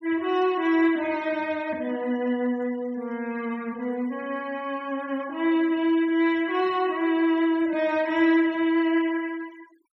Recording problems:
noise reduction artefacts; signal-to-artefact ratio 24 dB

